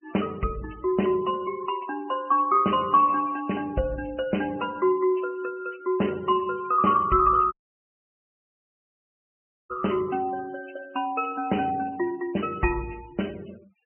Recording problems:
low-pass filter; nothing above 3.1 kHz
noise reduction artefacts; signal-to-artefact ratio 22 dB
audio cutting out; at 7.5 s for 2 s

